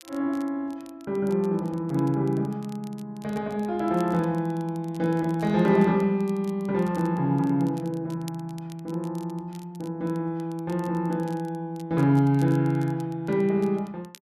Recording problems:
crackle; vinyl, SNR 27 dB

